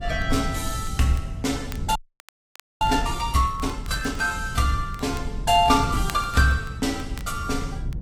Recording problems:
codec artefacts; AAC, log-spectral distance 3 dB
rumble; below 110 Hz, SNR 9 dB
crackle; vinyl, SNR 23 dB
audio freezing; at 2 s for 1 s

